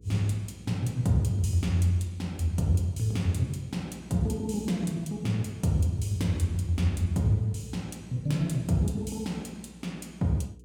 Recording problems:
electrical hum; 60 Hz, harmonics up to 480 Hz, SNR 24 dB

